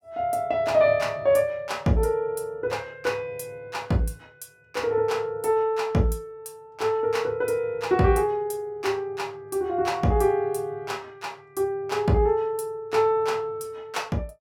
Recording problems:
none

